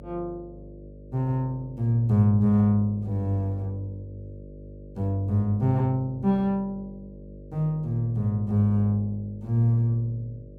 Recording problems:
hum; 50 Hz, harmonics up to 600 Hz, SNR 19 dB

